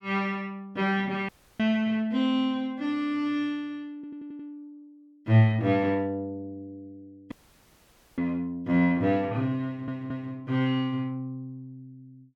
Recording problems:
audio cutting out; at 1.5 s and at 7.5 s for 1 s
audio stuttering; at 4 s and at 9.5 s

